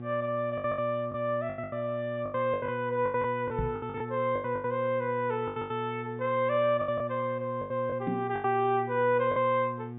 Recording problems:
low-pass filter; nothing above 4 kHz
hum; 60 Hz, harmonics up to 1.2 kHz, SNR 10 dB
lost packets; 14% of the sound replaced, filled with the last packet
microphone bump; at 3.5 s and at 8 s; peak +1 dB vs average level

